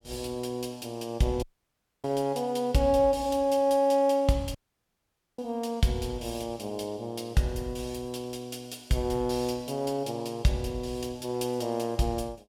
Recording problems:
audio cutting out; at 1.5 s for 0.5 s and at 4.5 s for 1 s

